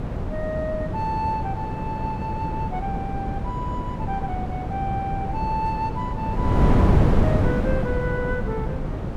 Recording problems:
wind noise; below 270 Hz, SNR -4 dB

